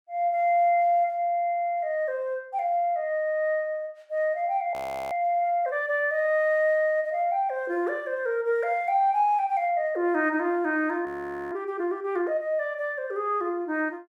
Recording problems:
frozen audio; at 4.5 s and at 11 s

